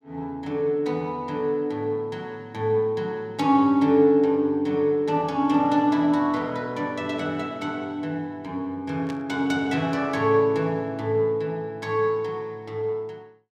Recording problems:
static burst; at 9 s; peak -13 dB vs average level

